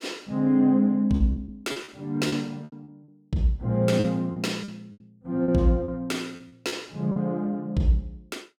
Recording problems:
lost packets; 10% of the sound replaced, filled with repeated pitch periods

